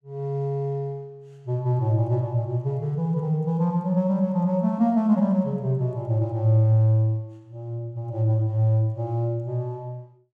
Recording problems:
none

